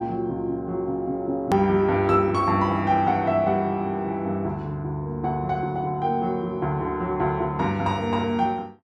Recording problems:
hard cut with a click; at 1.5 s

